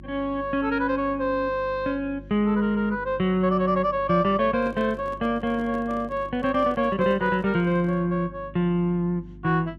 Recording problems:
hum; 50 Hz, harmonics up to 350 Hz, SNR 20 dB
microphone handling noise; from 4.5 to 8 s; peak -11 dB vs average level

